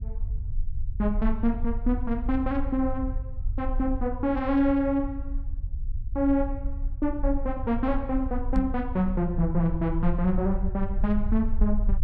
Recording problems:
low-frequency rumble; below 54 Hz, SNR 6 dB
microphone thump; at 8.5 s; peak +1 dB vs average level

